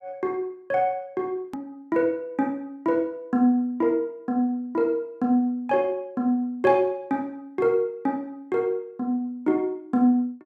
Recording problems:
hard cut with a click; at 1.5 s

